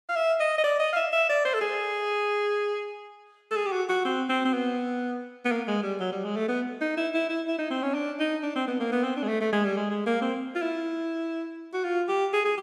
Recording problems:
none

